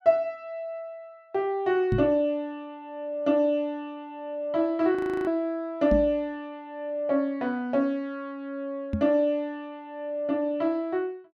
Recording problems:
microphone bump; at 2 s, at 6 s and at 9 s; peak +4 dB vs average level
frozen audio; at 5 s

